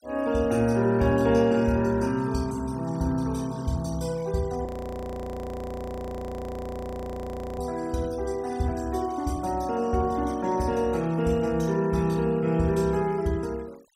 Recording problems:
noise reduction artefacts; signal-to-artefact ratio 23 dB
frozen audio; at 4.5 s for 3 s

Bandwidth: 16 kHz